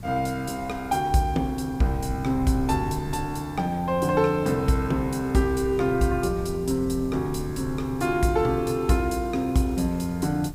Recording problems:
background hiss; slope -2 dB per octave, SNR 27 dB
wind on the microphone; below 130 Hz, SNR 15 dB

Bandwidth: 15.5 kHz